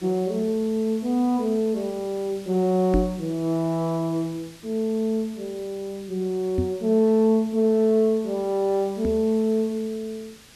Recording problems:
background hiss; SNR 23 dB
knock on the microphone; at 3 s, at 6.5 s and at 9 s; peak +4 dB vs average level

